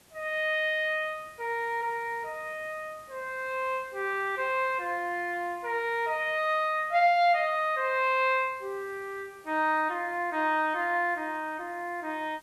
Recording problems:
hiss; slope -3 dB per octave, SNR 28 dB

